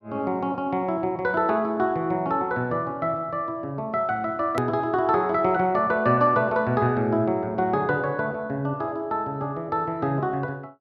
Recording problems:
edit click; at 4.5 s

